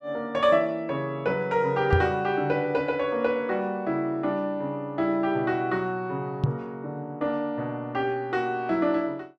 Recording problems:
microphone bump; at 2 s and at 6.5 s; peak +7 dB vs average level

